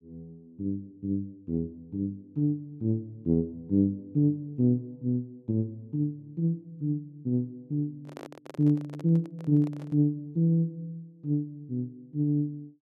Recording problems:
microphone handling noise; from 8 to 10 s; peak -10 dB vs average level

